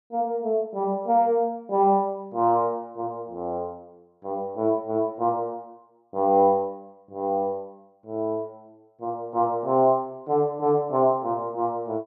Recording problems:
none

